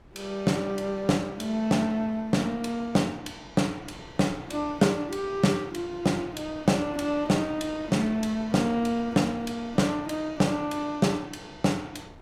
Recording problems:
wind noise; below 610 Hz, SNR 23 dB

